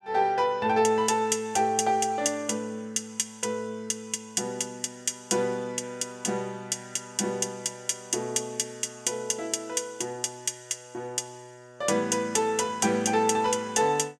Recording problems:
none

